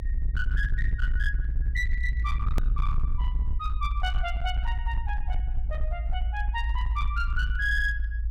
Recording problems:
distorted audio; hard clipping, signal-to-distortion ratio 11 dB
low-frequency rumble; below 56 Hz, SNR -3 dB
click at an edit; at 2.5 s

